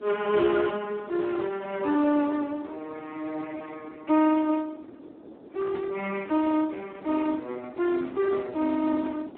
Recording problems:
phone line; 220 Hz to 2.2 kHz, Speex
wind on the microphone; below 480 Hz, SNR 19 dB

